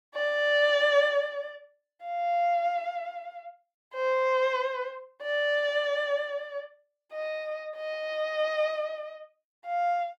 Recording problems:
none

